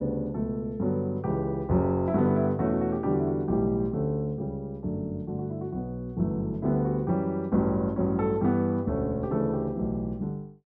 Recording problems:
none

